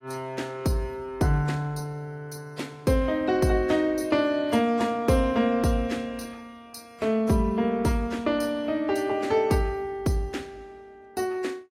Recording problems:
codec artefacts; AAC, log-spectral distance 2 dB, nothing above 14.3 kHz

